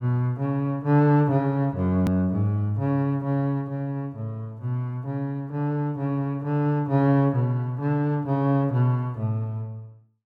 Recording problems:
click at an edit; at 2 s

